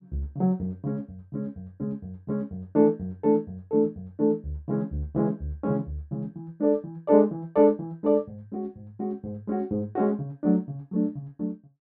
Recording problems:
none

